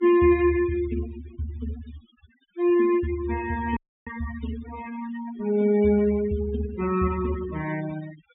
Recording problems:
treble missing; nothing above 4 kHz
noise reduction artefacts; signal-to-artefact ratio 15 dB
dropout; at 4 s

